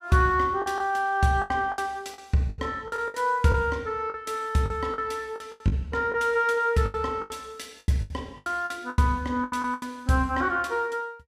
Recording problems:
lost packets; 13% of the sound replaced, filled with the last packet

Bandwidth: 15 kHz